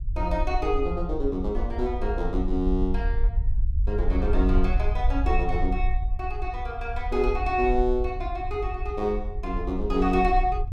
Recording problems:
rumble; below 56 Hz, SNR 2 dB

